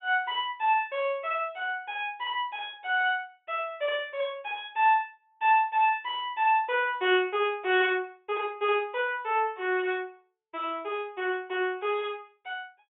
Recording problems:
low-pass filter; nothing above 3.5 kHz

